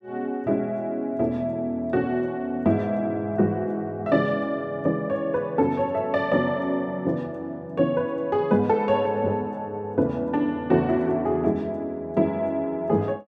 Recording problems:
none

